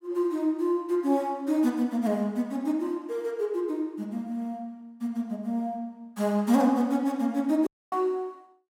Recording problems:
dropout; at 7.5 s

